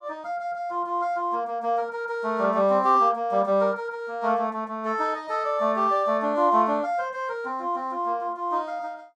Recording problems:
none

